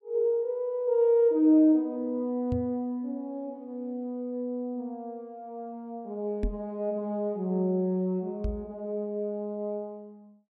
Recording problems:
knock on the microphone; at 2.5 s, at 6.5 s and at 8.5 s; peak +1 dB vs average level

